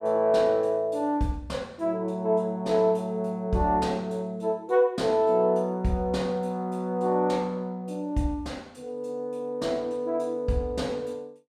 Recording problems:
none

